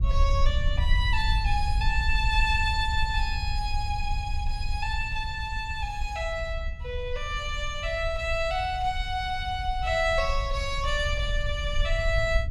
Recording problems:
low-frequency rumble; below 66 Hz, SNR 3 dB

